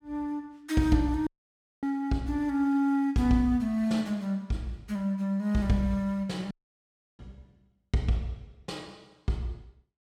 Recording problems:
audio cutting out; at 1.5 s for 0.5 s and at 6.5 s for 0.5 s

